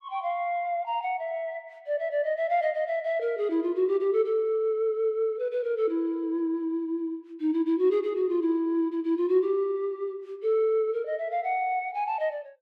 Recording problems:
none

